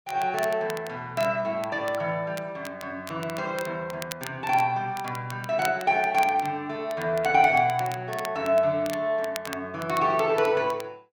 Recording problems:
crackle; vinyl, SNR 17 dB

